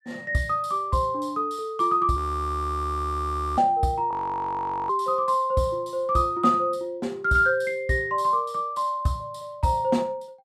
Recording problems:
frozen audio; at 2 s for 1.5 s and at 4 s for 1 s

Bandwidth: 14.5 kHz